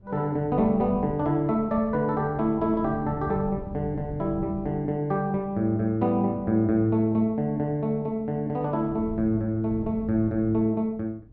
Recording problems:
wind on the microphone; below 180 Hz, SNR 16 dB

